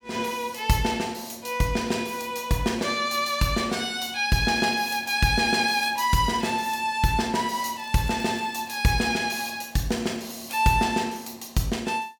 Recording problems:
crackle; from 4.5 to 6.5 s and from 8 to 10 s; loose cable, SNR 27 dB

